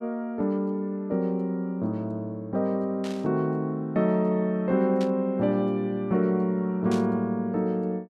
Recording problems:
burst of static; at 3 s, at 5 s and at 7 s; peak -9 dB vs average level

